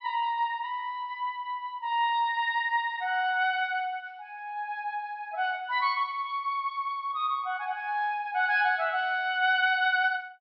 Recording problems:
treble cut off; nothing above 5.6 kHz

